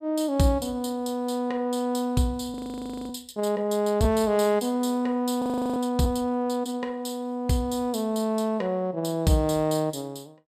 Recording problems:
frozen audio; at 2.5 s for 0.5 s and at 5.5 s

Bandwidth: 15 kHz